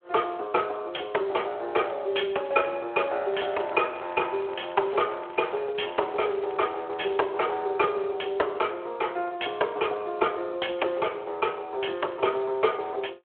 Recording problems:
phone line; 340 Hz to 3.3 kHz, Speex
crackle; from 3.5 to 5.5 s and from 6 to 7 s; loose cable, SNR 22 dB

